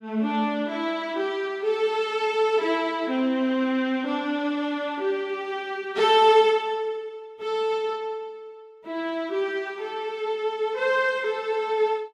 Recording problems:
none

